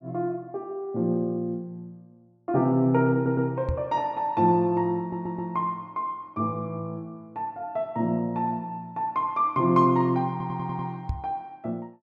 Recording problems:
stutter; at 3 s, at 5 s and at 10 s
microphone bump; at 3.5 s and at 11 s; peak +2 dB vs average level

